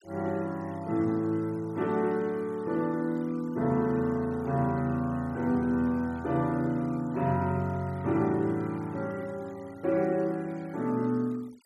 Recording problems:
denoising artefacts; signal-to-artefact ratio 27 dB

